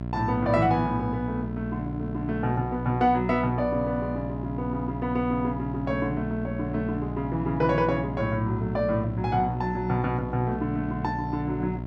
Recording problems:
hum; 60 Hz, harmonics up to 1.1 kHz, SNR 6 dB

